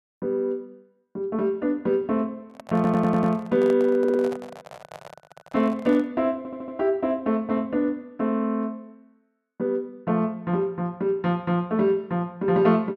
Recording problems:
microphone handling noise; from 2.5 to 6 s; peak -8 dB vs average level
audio stuttering; at 3 s, at 4 s and at 6.5 s

